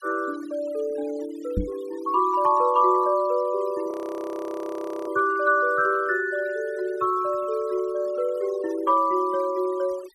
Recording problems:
denoising artefacts; signal-to-artefact ratio 23 dB
knock on the microphone; at 1.5 s; peak +2 dB vs average level
frozen audio; at 4 s for 1 s

